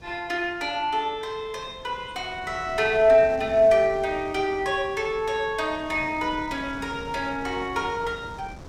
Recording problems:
wind on the microphone; below 560 Hz, SNR 19 dB

